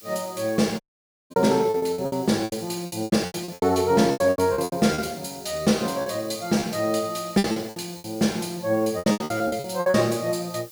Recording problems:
hiss; SNR 21 dB
lost packets; 17% of the sound replaced, filled with repeated pitch periods
dropout; at 1 s for 0.5 s

